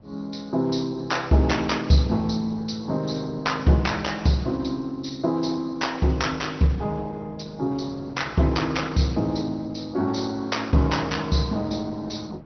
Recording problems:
low-pass filter; nothing above 6 kHz
lossy codec; Opus, log-spectral distance 4 dB
wind on the microphone; below 420 Hz, SNR 21 dB

